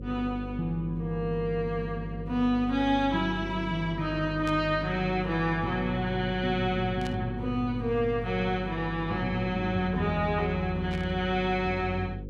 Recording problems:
electrical hum; 50 Hz, harmonics up to 550 Hz, SNR 10 dB
burst of static; at 4.5 s, at 7 s and at 11 s; peak -9 dB vs average level

